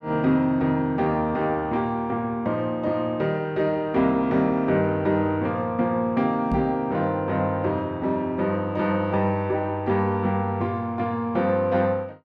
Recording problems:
microphone bump; at 6.5 s; peak 0 dB vs average level

